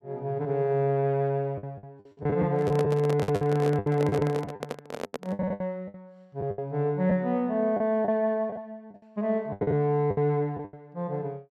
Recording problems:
lost packets; 12% of the sound replaced, filled with the last packet
microphone handling noise; from 2.5 to 5.5 s; peak -2 dB vs average level

